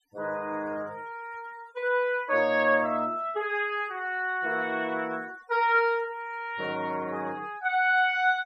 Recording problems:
denoising artefacts; signal-to-artefact ratio 26 dB

